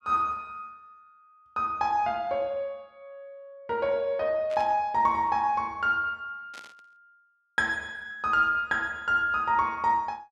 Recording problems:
static burst; at 4.5 s and at 6.5 s; peak -14 dB vs average level

